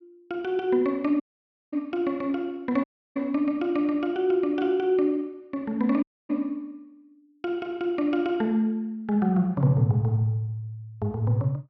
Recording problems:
dropout; at 1 s for 0.5 s, at 3 s and at 6 s

